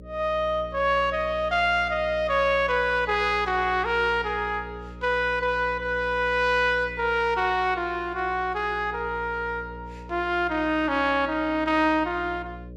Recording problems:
mains hum; 60 Hz, harmonics up to 600 Hz, SNR 17 dB

